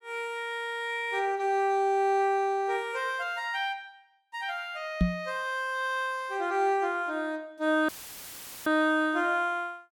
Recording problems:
microphone bump; at 5 s; peak +7 dB vs average level
dropout; at 8 s for 1 s; filled with static

